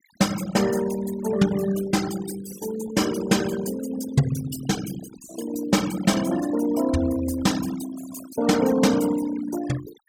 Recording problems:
noise reduction artefacts; signal-to-artefact ratio 13 dB

